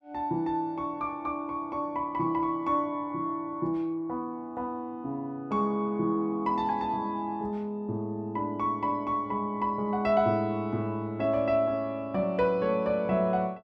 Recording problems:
none

